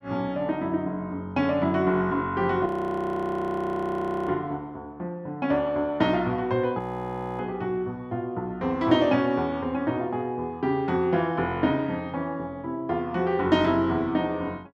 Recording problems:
frozen audio; at 2.5 s for 1.5 s and at 7 s for 0.5 s

